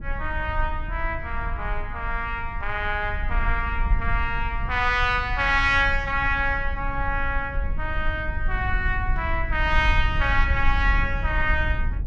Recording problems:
rumble; below 62 Hz, SNR 5 dB

